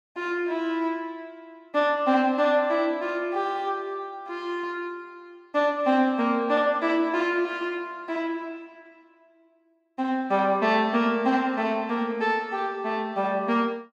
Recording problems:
none

